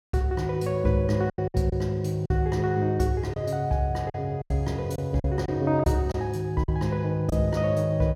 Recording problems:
lost packets; 6% of the sound replaced, filled with silence

